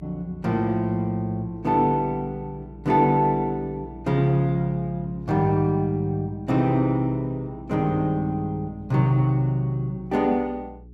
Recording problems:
electrical hum; 60 Hz, harmonics up to 420 Hz, SNR 20 dB

